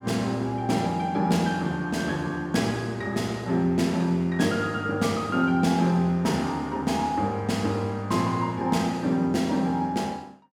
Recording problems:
none

